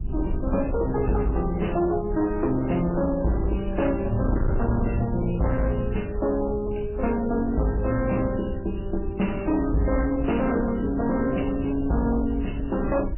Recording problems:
lossy compression; MP3, then MP3, log-spectral distance 4 dB, nothing above 2.9 kHz
distorted audio; hard clipping, signal-to-distortion ratio 10 dB
wind on the microphone; below 90 Hz, SNR 8 dB

